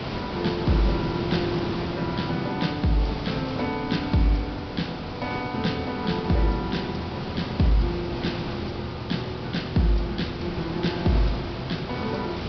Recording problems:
treble missing; nothing above 5.5 kHz
hiss; slope -5 dB per octave, SNR 6 dB
wind on the microphone; below 320 Hz, SNR 22 dB

